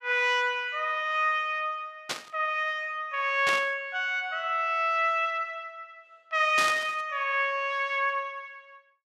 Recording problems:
burst of static; at 2 s, at 3.5 s and at 6.5 s; peak +1 dB vs average level

